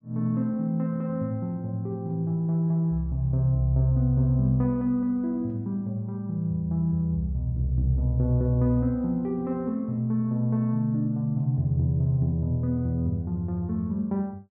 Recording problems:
none

